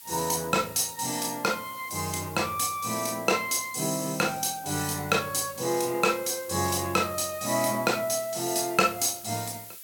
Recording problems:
hiss; slope +3 dB per octave, SNR 15 dB

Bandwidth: 17 kHz